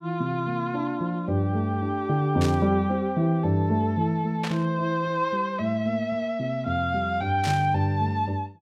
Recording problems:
burst of static; at 2.5 s, at 4.5 s and at 7.5 s; peak -3 dB vs average level

